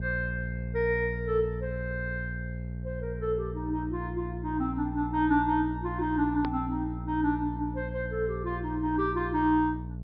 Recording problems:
low-pass filter; nothing above 5.5 kHz
hum; 60 Hz, harmonics up to 480 Hz, SNR 7 dB
edit click; at 6.5 s

